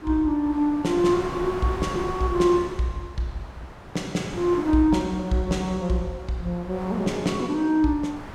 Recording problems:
wind noise; below 1.2 kHz, SNR 14 dB

